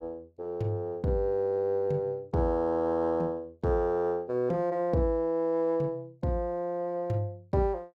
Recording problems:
none

